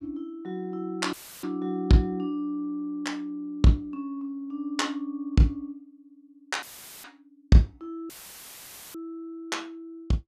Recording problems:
dropout; at 1 s, at 6.5 s and at 8 s for 1 s; filled with static

